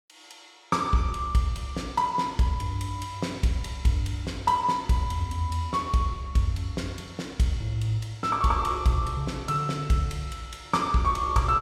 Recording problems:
none

